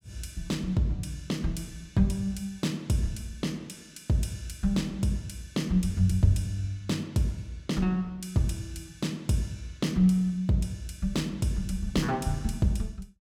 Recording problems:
none

